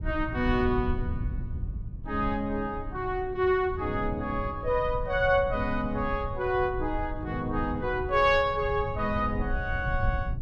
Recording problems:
rumble; below 100 Hz, SNR 8 dB

